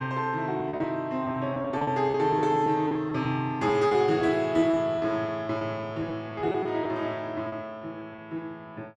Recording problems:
packet loss; 10% of the sound replaced, filled with repeated pitch periods

